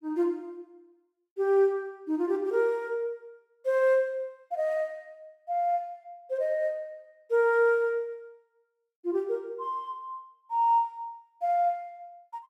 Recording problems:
none

